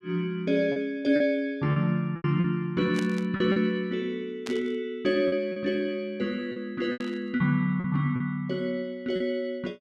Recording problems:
lost packets; 7% of the sound replaced, filled with repeated pitch periods
static burst; at 3 s, at 4.5 s and at 7 s; peak -5 dB vs average level

